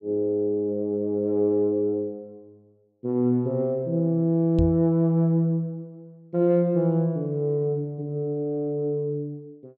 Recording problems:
microphone bump; at 4.5 s; peak +2 dB vs average level

